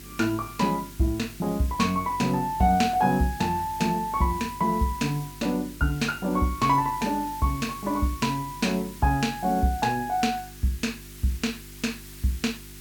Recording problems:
electrical hum; 50 Hz, harmonics up to 400 Hz, SNR 20 dB
background hiss; slope +2 dB per octave, SNR 18 dB

